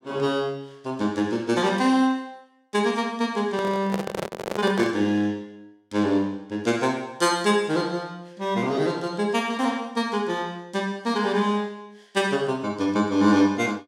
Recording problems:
handling noise; from 3.5 to 5 s; peak -1 dB vs average level

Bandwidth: 16 kHz